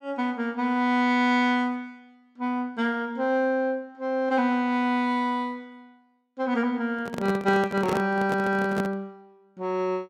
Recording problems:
handling noise; from 7 to 9 s; peak 0 dB vs average level

